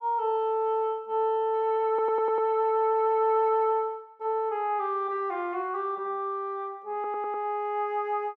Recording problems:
audio stuttering; at 2 s and at 7 s

